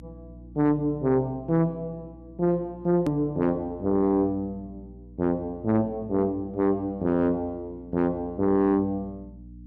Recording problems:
distorted audio; soft clipping, signal-to-distortion ratio 12 dB
mains hum; 60 Hz, harmonics up to 300 Hz, SNR 21 dB
hard cut with a click; at 3 s

